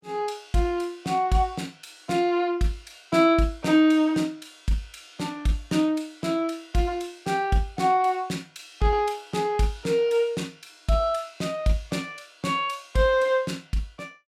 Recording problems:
none

